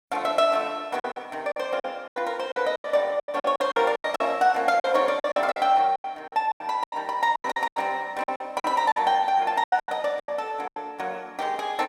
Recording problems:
packet loss; 15% of the sound replaced, filled with silence

